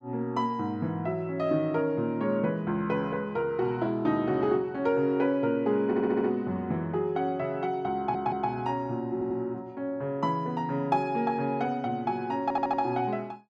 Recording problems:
audio stuttering; 4 times, first at 6 s

